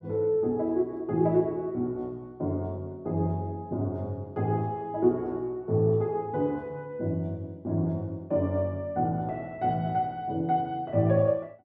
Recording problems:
none

